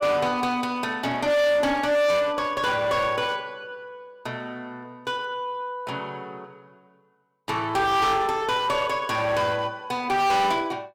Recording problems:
distorted audio; hard clipping, uneven, signal-to-distortion ratio 6 dB

